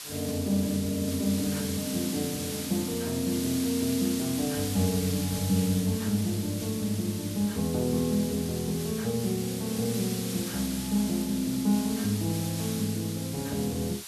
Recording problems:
background hiss; slope +2 dB per octave, SNR 7 dB

